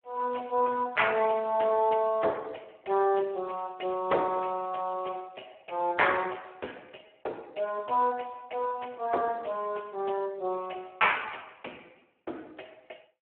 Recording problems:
telephone audio; 300 Hz to 3.1 kHz, Speex

